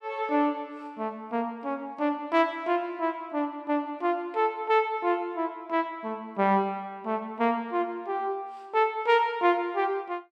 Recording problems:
none

